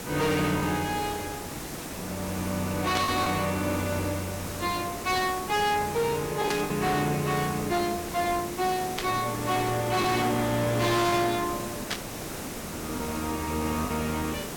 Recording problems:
distorted audio; hard clipping, signal-to-distortion ratio 7 dB
hiss; slope -5 dB per octave, SNR 8 dB
packet loss; 3% of the sound replaced, filled with the last packet
burst of static; 4 times, first at 3 s; peak +2 dB vs average level

